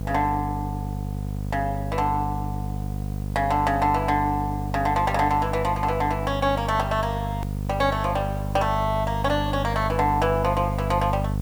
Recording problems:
electrical hum; 50 Hz, harmonics up to 750 Hz, SNR 5 dB
background hiss; slope +1 dB per octave, SNR 24 dB
hard cut with a click; at 7.5 s

